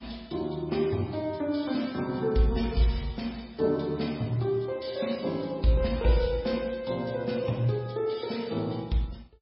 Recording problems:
lossy compression; MP3, log-spectral distance 4 dB, nothing above 5.2 kHz

